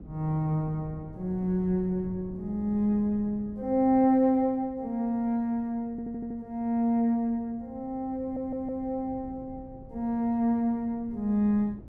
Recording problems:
wind on the microphone; below 230 Hz, SNR 20 dB
audio stuttering; at 6 s and at 8 s

